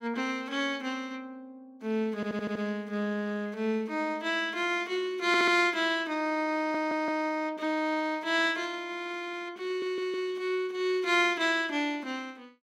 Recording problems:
stutter; 4 times, first at 2 s

